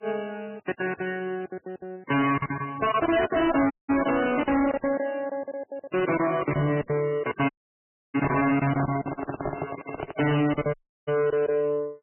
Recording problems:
codec artefacts; MP3, log-spectral distance 4 dB, nothing above 3 kHz
distortion; hard clipping, signal-to-distortion ratio 6 dB
lost packets; 18% of the sound replaced, filled with silence
dropout; at 3.5 s, at 7.5 s for 0.5 s and at 11 s
handling noise; from 7 to 10 s; peak -1 dB vs average level

